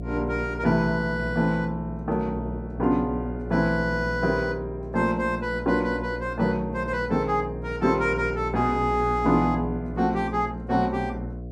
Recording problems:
hum; 60 Hz, harmonics up to 720 Hz, SNR 10 dB

